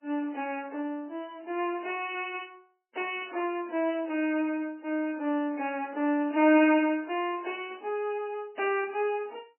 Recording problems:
codec artefacts; MP3, log-spectral distance 3 dB, nothing above 2.6 kHz

